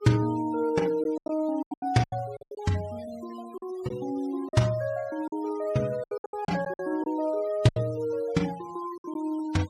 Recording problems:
denoising artefacts; signal-to-artefact ratio 21 dB
packet loss; 11% of the sound replaced, filled with silence

